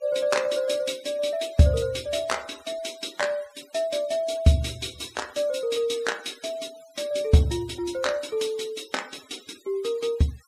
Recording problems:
noise reduction artefacts; signal-to-artefact ratio 20 dB

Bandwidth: 15 kHz